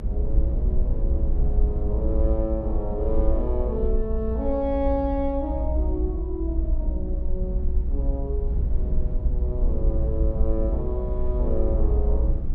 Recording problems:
low-frequency rumble; below 60 Hz, SNR -4 dB

